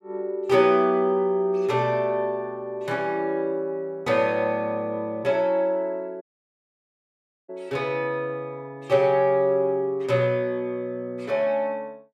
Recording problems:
audio cutting out; at 6 s for 1.5 s

